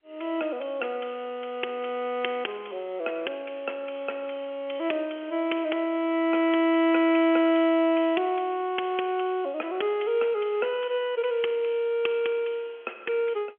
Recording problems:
telephone audio; 280 Hz to 3.3 kHz, G.711

